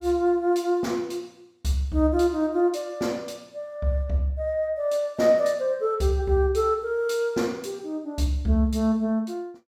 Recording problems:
none

